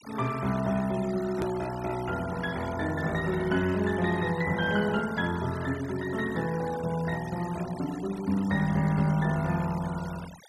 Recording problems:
noise reduction artefacts; signal-to-artefact ratio 16 dB
click at an edit; at 1.5 s

